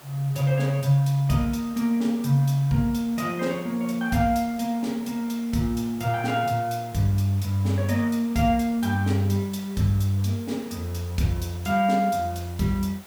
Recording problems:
background hiss; slope -3 dB per octave, SNR 21 dB

